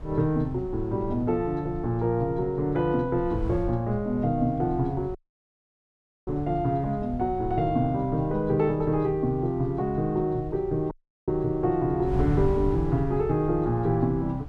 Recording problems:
wind on the microphone; below 120 Hz, SNR 12 dB
audio cutting out; at 5 s for 1 s and at 11 s

